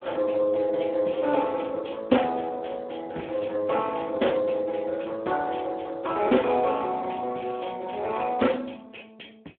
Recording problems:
telephone audio; 190 Hz to 3.3 kHz, Speex

